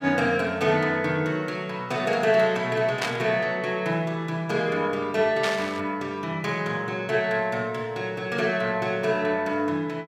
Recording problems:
burst of static; at 3 s and at 5.5 s; peak +1 dB vs average level

